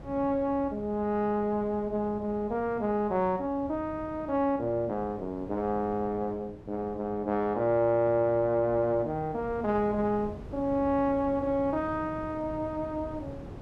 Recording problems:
wind noise; below 350 Hz, SNR 16 dB

